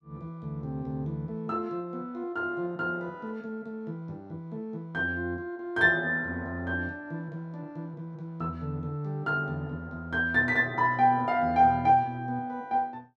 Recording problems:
none

